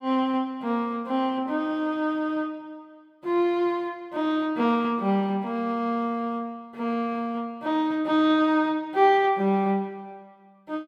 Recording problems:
none

